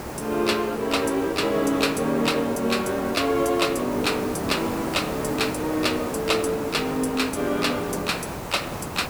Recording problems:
background hiss; slope -7 dB per octave, SNR 9 dB

